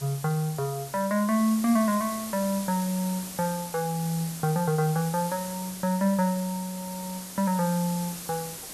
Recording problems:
hiss; SNR 10 dB

